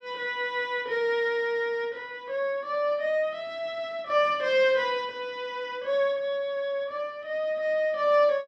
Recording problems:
none

